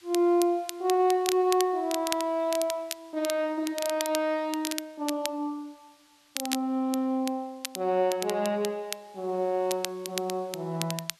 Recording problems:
background hiss; SNR 29 dB
crackle; vinyl, SNR 9 dB

